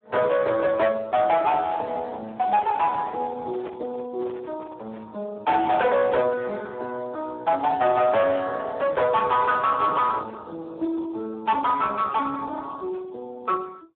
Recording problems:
phone line; 280 Hz to 3 kHz, Speex
distorted audio; hard clipping, uneven, signal-to-distortion ratio 11 dB
microphone handling noise; from 2 to 5 s; peak -10 dB vs average level

